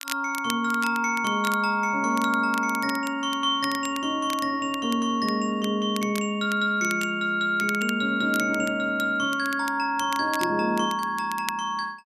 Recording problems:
crackling; vinyl, SNR 15 dB

